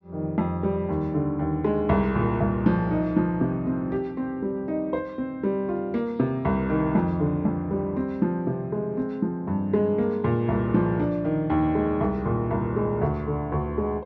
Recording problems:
none

